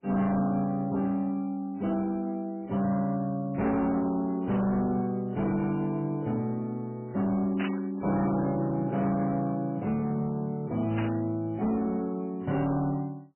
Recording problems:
lossy codec; MP3, log-spectral distance 2 dB, nothing above 2.4 kHz
distortion; soft clipping, signal-to-distortion ratio 11 dB
burst of static; at 7.5 s and at 11 s; peak -4 dB vs average level

